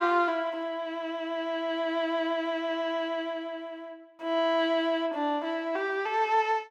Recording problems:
none

